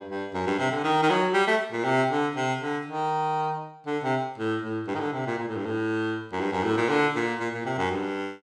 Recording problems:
none

